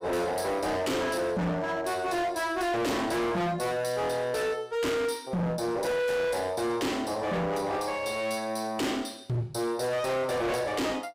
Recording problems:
distorted audio; hard clipping, uneven, signal-to-distortion ratio 6 dB

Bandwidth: 15.5 kHz